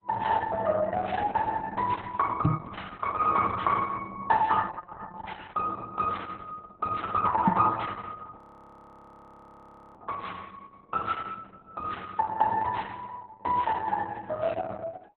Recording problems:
lossy compression; Opus, log-spectral distance 3 dB, nothing above 3.9 kHz
knock on the microphone; at 2.5 s and at 7.5 s; peak +8 dB vs average level
audio freezing; at 8.5 s for 1.5 s

